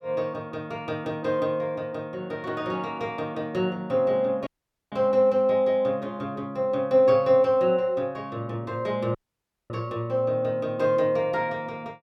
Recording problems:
dropout; at 4.5 s and at 9 s for 0.5 s

